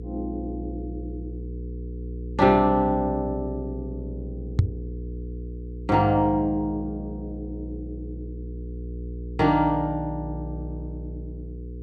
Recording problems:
hum; 60 Hz, harmonics up to 480 Hz, SNR 10 dB
microphone thump; at 4.5 s; peak +9 dB vs average level

